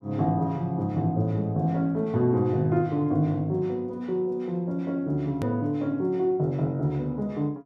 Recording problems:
click at an edit; at 5.5 s

